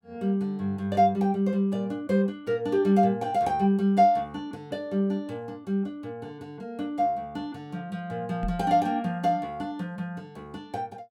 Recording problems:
microphone bump; at 8.5 s; peak -4 dB vs average level

